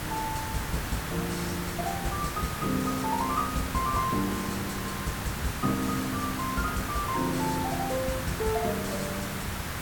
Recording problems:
background hiss; SNR 2 dB

